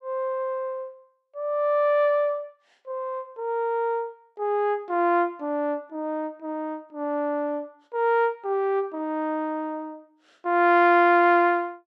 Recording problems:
none

